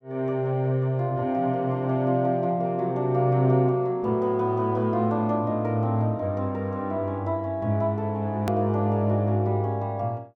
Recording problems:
edit click; at 8.5 s

